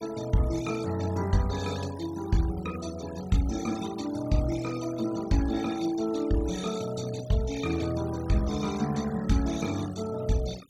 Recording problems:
noise reduction artefacts; signal-to-artefact ratio 15 dB

